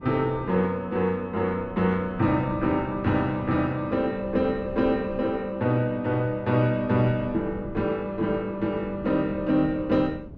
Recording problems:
wind on the microphone; below 250 Hz, SNR 17 dB

